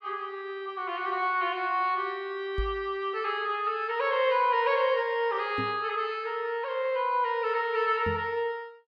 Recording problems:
knock on the microphone; at 2.5 s, at 5.5 s and at 8 s; peak -1 dB vs average level

